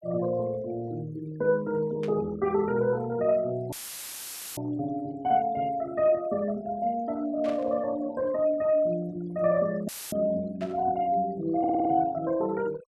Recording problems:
noise reduction artefacts; signal-to-artefact ratio 21 dB
burst of static; at 2 s, at 7.5 s and at 11 s; peak -12 dB vs average level
dropout; at 3.5 s for 1 s and at 10 s; filled with static
stutter; at 12 s

